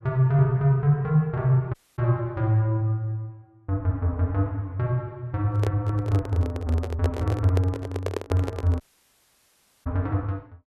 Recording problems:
audio cutting out; at 1.5 s and at 9 s for 1 s
microphone handling noise; from 5.5 to 9 s; peak 0 dB vs average level

